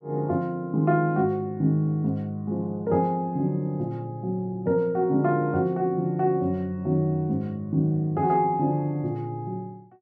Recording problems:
none

